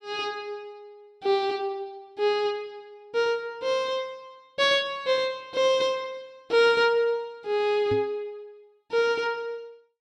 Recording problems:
microphone thump; at 8 s; peak -3 dB vs average level

